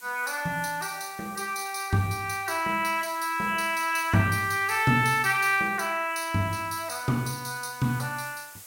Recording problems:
hiss; slope 0 dB per octave, SNR 19 dB

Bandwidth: 16.5 kHz